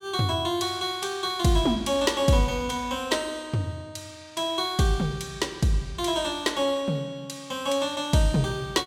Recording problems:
none

